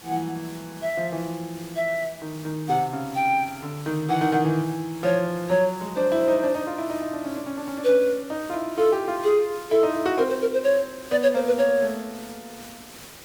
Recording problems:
hiss; slope -2 dB per octave, SNR 19 dB

